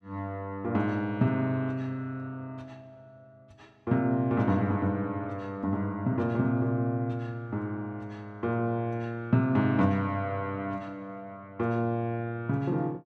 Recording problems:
none

